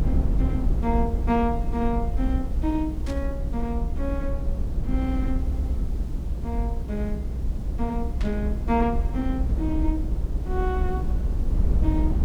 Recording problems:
background hiss; slope +1 dB per octave, SNR 26 dB
low-frequency rumble; below 70 Hz, SNR -2 dB
burst of static; at 3 s and at 8 s; peak -6 dB vs average level
audio stuttering; at 5.5 s

